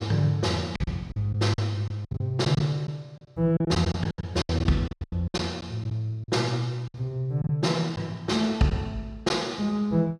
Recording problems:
packet loss; 11% of the sound replaced, filled with silence

